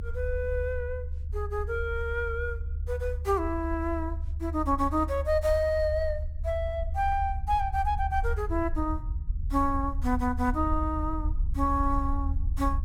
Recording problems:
low-frequency rumble; below 74 Hz, SNR 4 dB

